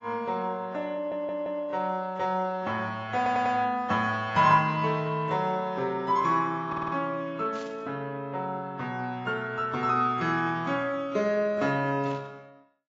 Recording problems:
lossy compression; AAC, log-spectral distance 2 dB, nothing above 6.9 kHz
audio stuttering; at 1 s, at 3 s and at 6.5 s
static burst; at 7.5 s and at 12 s; peak -15 dB vs average level

